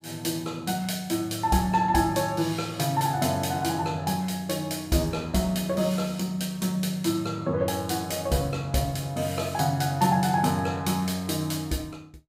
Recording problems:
none

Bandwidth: 15.5 kHz